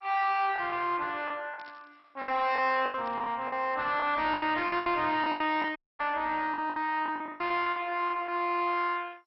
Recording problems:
lossy compression; MP2, log-spectral distance 3 dB, nothing above 5.5 kHz
distorted audio; soft clipping, signal-to-distortion ratio 10 dB
lost packets; 12% of the sound replaced, filled with the last packet
static burst; at 1.5 s, at 3 s and at 5.5 s; peak -16 dB vs average level
audio cutting out; at 6 s

